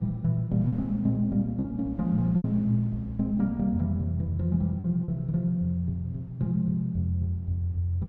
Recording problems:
wind noise; below 320 Hz, SNR 24 dB
packet loss; 3% of the sound replaced, filled with repeated pitch periods

